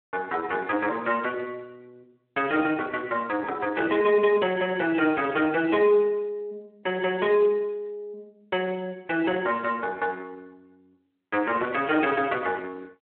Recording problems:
phone line; 280 Hz to 3.2 kHz, Speex
distorted audio; soft clipping, signal-to-distortion ratio 15 dB

